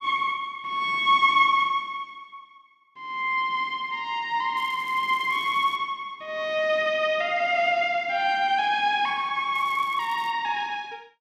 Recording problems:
crackle; from 4.5 to 6 s and at 9.5 s; loose cable, SNR 28 dB

